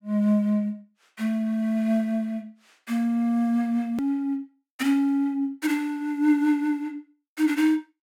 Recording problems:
edit click; at 4 s

